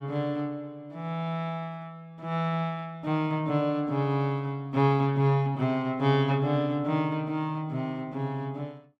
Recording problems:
none

